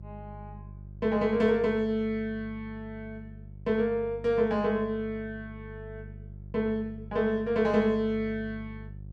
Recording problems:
hum; 50 Hz, harmonics up to 400 Hz, SNR 16 dB

